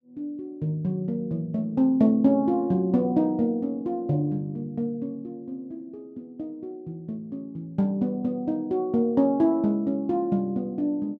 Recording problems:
none

